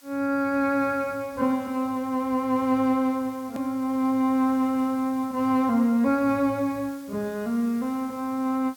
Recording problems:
background hiss; slope +2 dB per octave, SNR 25 dB
edit click; at 3.5 s

